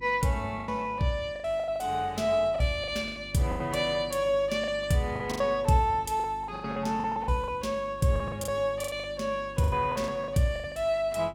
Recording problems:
hum; 50 Hz, harmonics up to 350 Hz, SNR 20 dB
packet loss; 14% of the sound replaced, filled with the last packet

